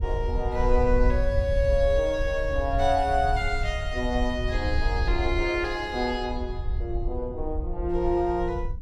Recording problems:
wind on the microphone; below 66 Hz, SNR 4 dB

